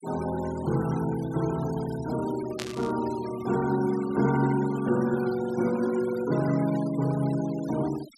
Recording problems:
denoising artefacts; signal-to-artefact ratio 17 dB
static burst; at 2.5 s; peak -4 dB vs average level

